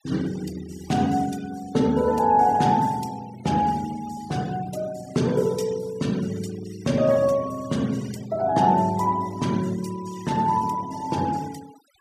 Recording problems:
noise reduction artefacts; signal-to-artefact ratio 21 dB

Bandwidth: 15 kHz